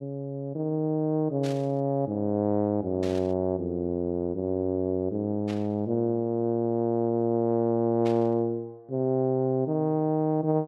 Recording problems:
burst of static; 4 times, first at 1.5 s; peak -10 dB vs average level

